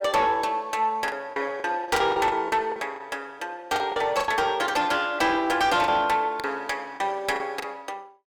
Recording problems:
distorted audio; soft clipping, signal-to-distortion ratio 11 dB
packet loss; 9% of the sound replaced, filled with the last packet

